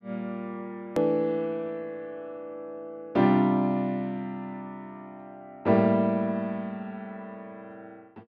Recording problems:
hard cut with a click; at 1 s

